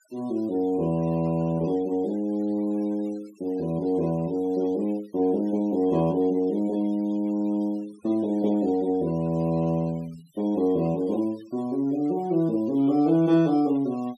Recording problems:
denoising artefacts; signal-to-artefact ratio 26 dB

